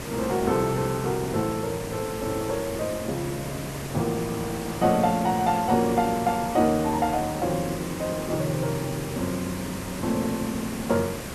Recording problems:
hiss; slope -5 dB per octave, SNR 8 dB

